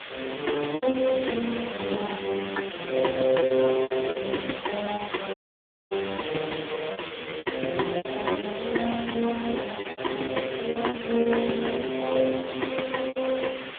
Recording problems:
phone line; 220 Hz to 2.9 kHz, AMR-NB
hiss; SNR 10 dB
packet loss; 12% of the sound replaced, filled with repeated pitch periods
crackle; from 5 to 7 s; loose cable, SNR 16 dB
audio cutting out; at 5.5 s for 0.5 s

